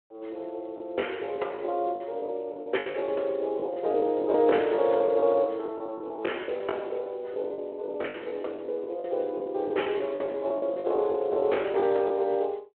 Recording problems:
telephone audio; 340 Hz to 3.3 kHz, Speex
packet loss; 14% of the sound replaced, filled with the last packet

